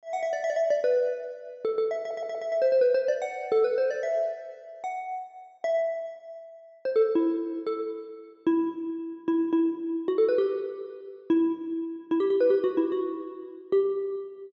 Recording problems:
stutter; at 2 s

